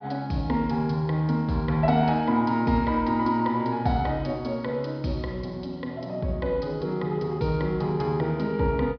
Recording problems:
low-pass filter; nothing above 5.5 kHz

